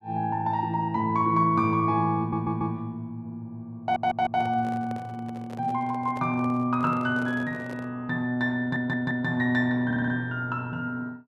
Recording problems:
stutter; 4 times, first at 2 s
handling noise; from 4 to 8 s; peak -12 dB vs average level

